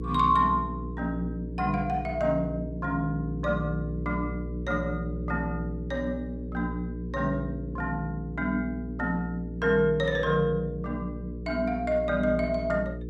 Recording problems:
electrical hum; 60 Hz, harmonics up to 480 Hz, SNR 7 dB

